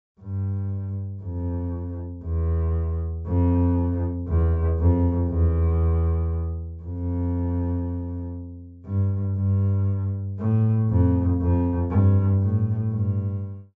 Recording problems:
treble cut off; nothing above 8 kHz

